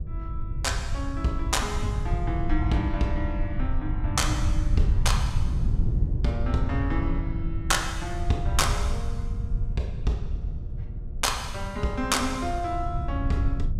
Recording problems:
hum; 60 Hz, harmonics up to 1.3 kHz, SNR 25 dB
low-frequency rumble; below 88 Hz, SNR 1 dB
wind on the microphone; below 160 Hz, SNR 12 dB

